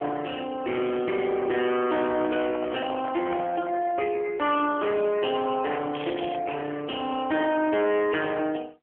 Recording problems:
phone line; 260 Hz to 3.4 kHz, AMR-NB
distorted audio; hard clipping, signal-to-distortion ratio 12 dB
microphone handling noise; from 2 to 4 s; peak -5 dB vs average level
crackling; at 6 s; loose cable, SNR 14 dB

